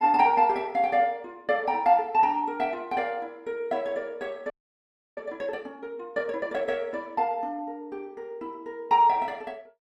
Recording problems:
frozen audio; at 4.5 s for 0.5 s

